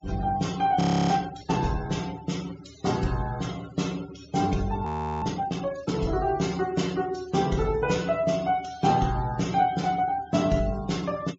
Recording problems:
treble cut off; nothing above 8 kHz
denoising artefacts; signal-to-artefact ratio 18 dB
audio freezing; at 1 s and at 5 s

